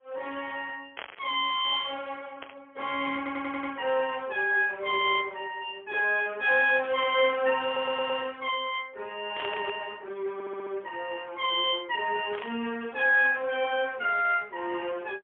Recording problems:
phone line; 300 Hz to 3.4 kHz, AMR-NB, then MP3
static burst; 5 times, first at 1 s; peak -5 dB vs average level
stutter; at 3 s, at 7.5 s and at 10 s

